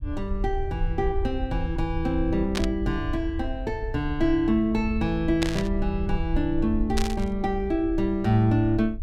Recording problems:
rumble; below 70 Hz, SNR 7 dB
static burst; at 2.5 s, at 5.5 s and at 7 s; peak +2 dB vs average level

